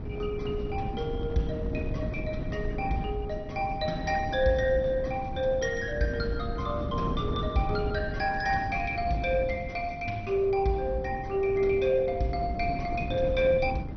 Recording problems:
lossy compression; MP2, log-spectral distance 2 dB, nothing above 5 kHz
wind noise; below 250 Hz, SNR 7 dB

